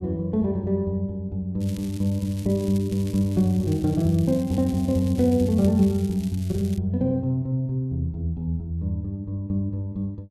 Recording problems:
crackling; from 1.5 to 7 s; loose cable, SNR 21 dB

